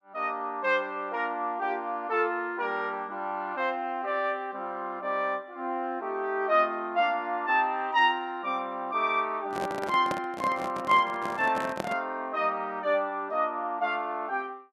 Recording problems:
handling noise; from 9.5 to 12 s; peak 0 dB vs average level

